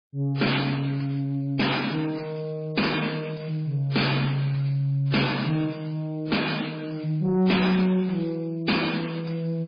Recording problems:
lossy compression; MP3, then MP3, log-spectral distance 6 dB
distortion; soft clipping, signal-to-distortion ratio 11 dB

